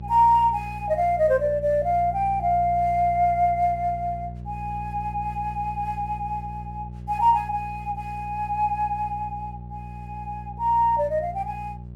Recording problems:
electrical hum; 60 Hz, harmonics up to 540 Hz, SNR 13 dB

